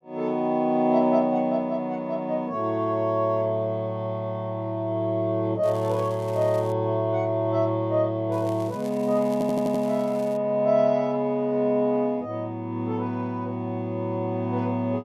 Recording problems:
crackle; from 5.5 to 6.5 s and from 8.5 to 10 s; loose cable, SNR 24 dB
audio stuttering; at 9.5 s

